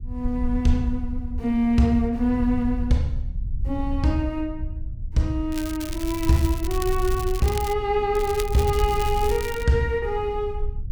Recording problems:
rumble; below 72 Hz, SNR 8 dB
crackle; from 5.5 to 7.5 s and from 8 to 9.5 s; loose cable, SNR 13 dB

